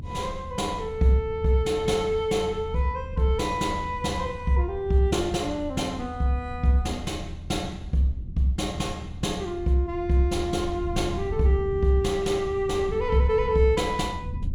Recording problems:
rumble; below 100 Hz, SNR 11 dB

